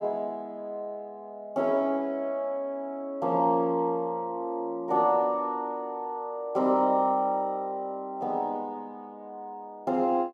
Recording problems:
none

